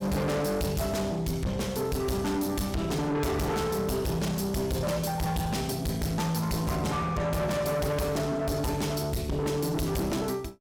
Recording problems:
distortion; soft clipping, signal-to-distortion ratio 6 dB

